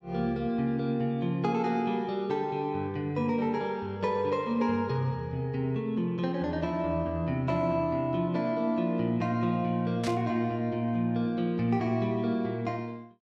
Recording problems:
static burst; at 10 s; peak -5 dB vs average level

